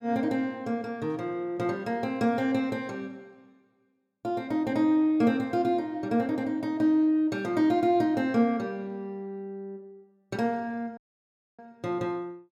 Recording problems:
dropout; at 11 s for 0.5 s

